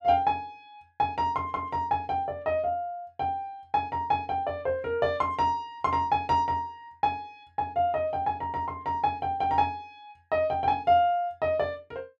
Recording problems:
none

